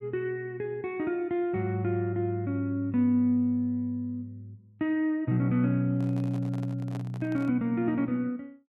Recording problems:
microphone handling noise; from 6 to 7.5 s; peak -10 dB vs average level

